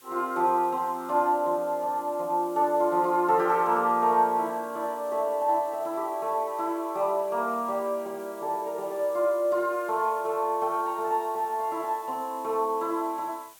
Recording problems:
hiss; slope +1 dB per octave, SNR 24 dB

